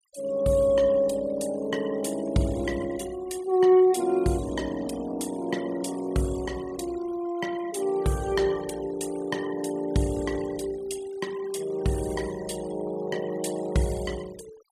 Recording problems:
denoising artefacts; signal-to-artefact ratio 19 dB

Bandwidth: 14.5 kHz